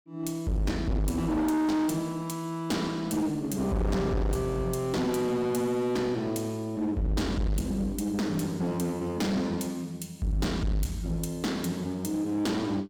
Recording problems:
distortion; hard clipping, uneven, signal-to-distortion ratio 6 dB

